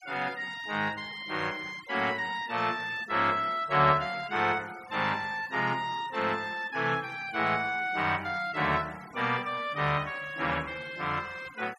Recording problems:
denoising artefacts; signal-to-artefact ratio 20 dB

